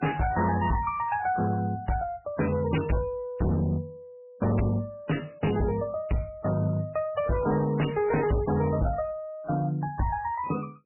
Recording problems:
codec artefacts; MP3, log-spectral distance 3 dB, nothing above 2.9 kHz
distortion; hard clipping, signal-to-distortion ratio 6 dB

